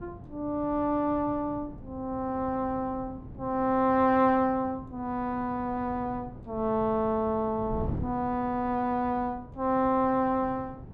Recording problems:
wind on the microphone; below 240 Hz, SNR 15 dB

